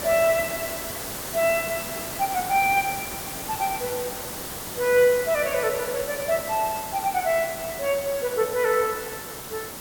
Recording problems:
background hiss; slope -3 dB per octave, SNR 7 dB

